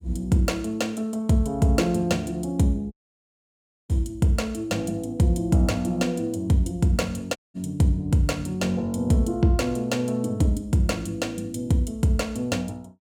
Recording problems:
dropout; at 3 s for 1 s and at 7.5 s

